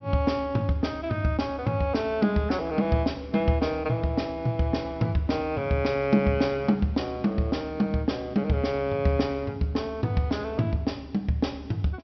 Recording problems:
treble cut off; nothing above 5.8 kHz

